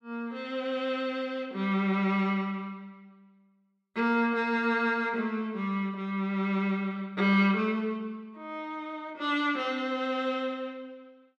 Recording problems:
none

